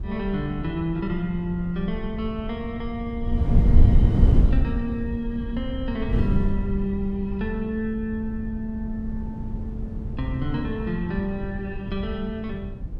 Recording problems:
wind on the microphone; below 98 Hz, SNR -2 dB

